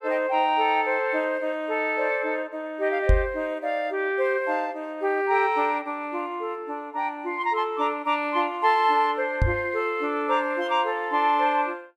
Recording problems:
microphone thump; at 3 s and at 9.5 s; peak +7 dB vs average level

